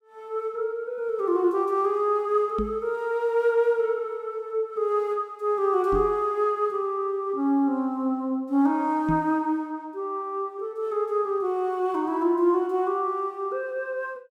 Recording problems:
microphone thump; at 2.5 s, at 6 s and at 9 s; peak 0 dB vs average level

